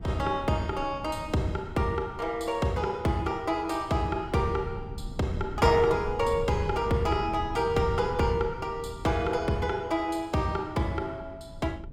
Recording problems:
wind on the microphone; below 150 Hz, SNR 12 dB

